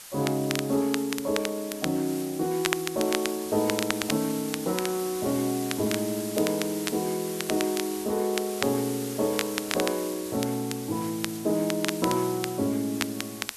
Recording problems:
hiss; slope +1 dB per octave, SNR 10 dB
crackling; vinyl, SNR 7 dB

